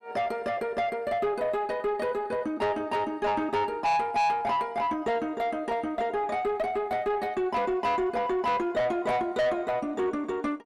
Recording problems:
distortion; soft clipping, signal-to-distortion ratio 7 dB

